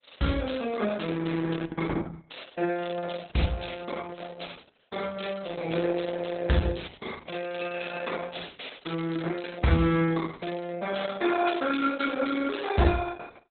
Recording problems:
lossy compression; Opus, log-spectral distance 7 dB, nothing above 4 kHz

